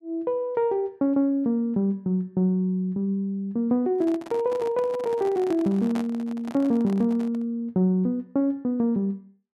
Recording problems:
microphone handling noise; from 4 to 7.5 s; peak -6 dB vs average level

